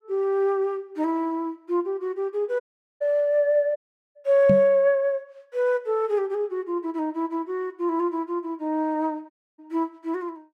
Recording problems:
audio cutting out; at 2.5 s, at 4 s and at 9.5 s
knock on the microphone; at 4.5 s; peak +5 dB vs average level

